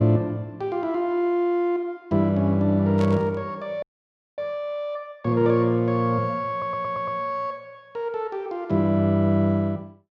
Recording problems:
static burst; at 3 s; peak -11 dB vs average level
audio freezing; at 4 s for 0.5 s
stutter; at 6.5 s

